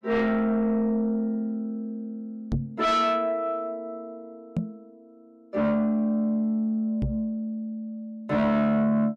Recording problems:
distortion; soft clipping, signal-to-distortion ratio 10 dB
microphone bump; at 2.5 s, at 4.5 s and at 7 s; peak +3 dB vs average level

